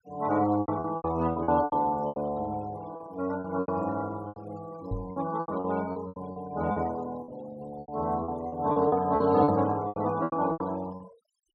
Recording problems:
noise reduction artefacts; signal-to-artefact ratio 20 dB
packet loss; 15% of the sound replaced, filled with repeated pitch periods
knock on the microphone; at 5 s; peak -2 dB vs average level

